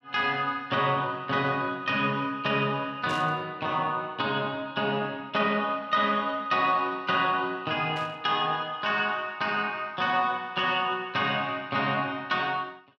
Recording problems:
static burst; at 3 s and at 8 s; peak -10 dB vs average level

